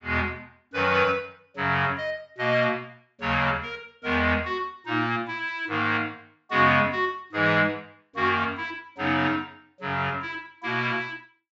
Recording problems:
low-pass filter; nothing above 8 kHz

